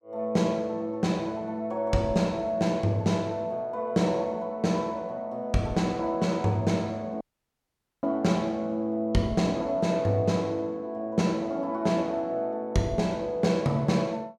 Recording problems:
dropout; at 7 s for 1 s

